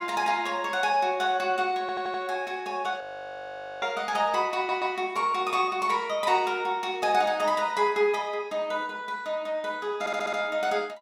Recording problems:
stutter; at 2 s, at 4.5 s and at 10 s
frozen audio; at 3 s for 1 s

